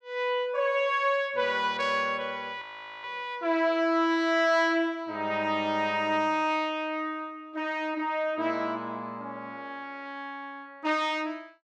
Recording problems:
frozen audio; at 2.5 s

